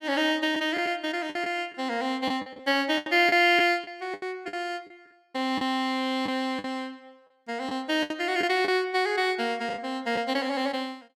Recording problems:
packet loss; 8% of the sound replaced, filled with the last packet

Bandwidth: 16 kHz